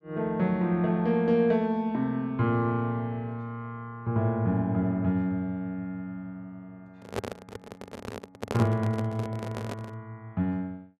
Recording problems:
microphone handling noise; from 7 to 10 s; peak +1 dB vs average level

